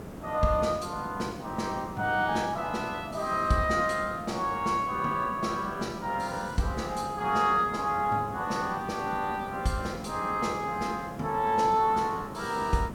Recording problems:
hiss; slope -9 dB per octave, SNR 12 dB

